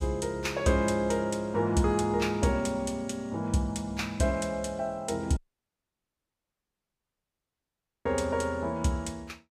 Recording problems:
audio cutting out; at 5.5 s for 2.5 s

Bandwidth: 15.5 kHz